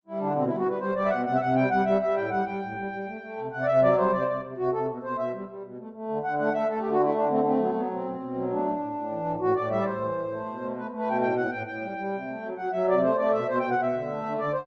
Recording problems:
lossy codec; Opus, log-spectral distance 2 dB

